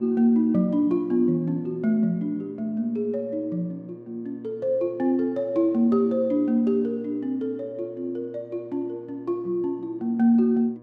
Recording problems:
electrical hum; 60 Hz, harmonics up to 1.2 kHz, SNR 24 dB

